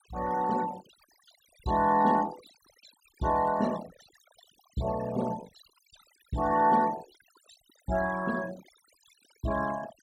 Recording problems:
noise reduction artefacts; signal-to-artefact ratio 17 dB

